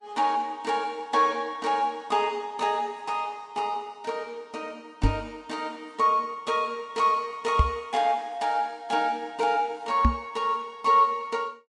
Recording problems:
codec artefacts; Vorbis, log-spectral distance 2 dB
microphone thump; at 5 s, at 7.5 s and at 10 s; peak +8 dB vs average level

